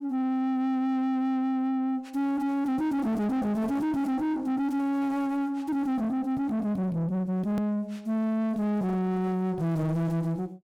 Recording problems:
distorted audio; soft clipping, signal-to-distortion ratio 7 dB
edit click; at 7.5 s

